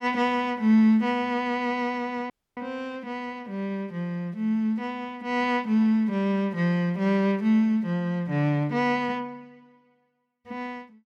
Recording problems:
dropout; at 2.5 s

